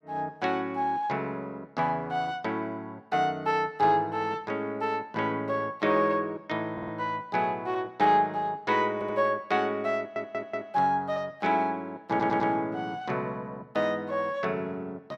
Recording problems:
audio stuttering; 4 times, first at 6.5 s

